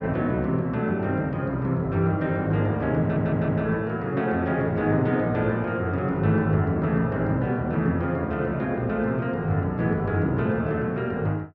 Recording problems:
stutter; at 3 s

